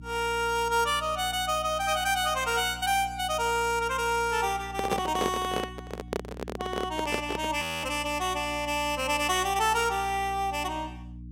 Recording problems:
electrical hum; 60 Hz, harmonics up to 300 Hz, SNR 16 dB
handling noise; from 4.5 to 7.5 s; peak +3 dB vs average level
audio freezing; at 7.5 s

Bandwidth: 16 kHz